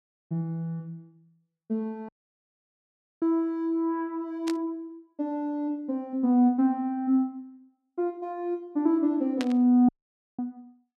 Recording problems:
audio cutting out; at 2 s for 1 s and at 10 s
static burst; at 4.5 s and at 9.5 s; peak -4 dB vs average level

